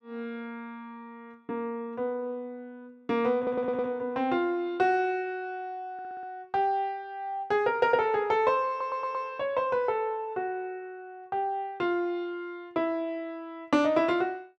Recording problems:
stutter; at 3.5 s, at 6 s and at 8.5 s

